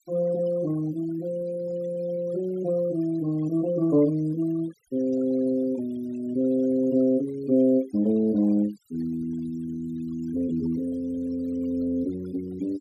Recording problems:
denoising artefacts; signal-to-artefact ratio 22 dB

